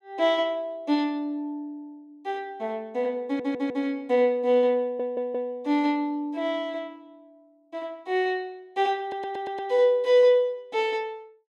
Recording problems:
audio stuttering; at 3.5 s, at 5 s and at 9 s

